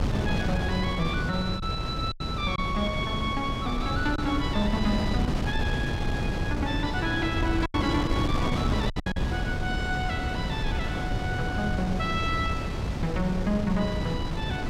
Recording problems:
wind noise; below 290 Hz, SNR 0 dB
lost packets; 3% of the sound replaced, filled with silence

